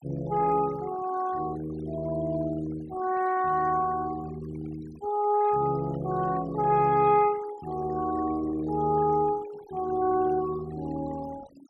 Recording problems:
noise reduction artefacts; signal-to-artefact ratio 19 dB

